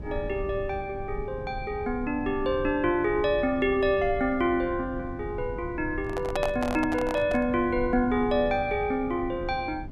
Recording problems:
mains hum; 50 Hz, harmonics up to 300 Hz, SNR 19 dB
low-frequency rumble; below 120 Hz, SNR 14 dB
microphone handling noise; from 6 to 7.5 s; peak 0 dB vs average level

